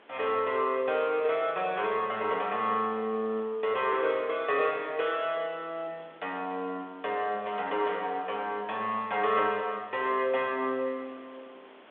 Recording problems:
telephone audio; 320 Hz to 3.5 kHz, G.726
background hiss; SNR 25 dB

